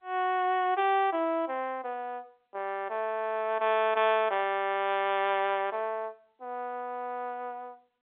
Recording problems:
telephone audio; 280 Hz to 3.7 kHz, G.711

